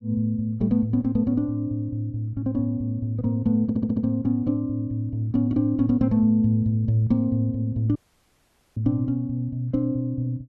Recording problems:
audio stuttering; at 3.5 s
dropout; at 8 s for 1 s

